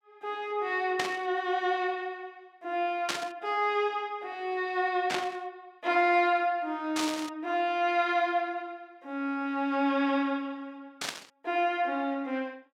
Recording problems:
static burst; 5 times, first at 1 s; peak +3 dB vs average level

